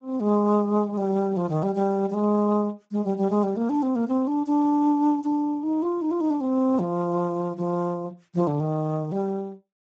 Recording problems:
lossy compression; Speex, log-spectral distance 2 dB

